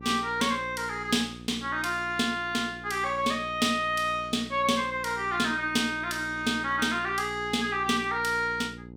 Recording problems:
hum; 60 Hz, harmonics up to 900 Hz, SNR 17 dB

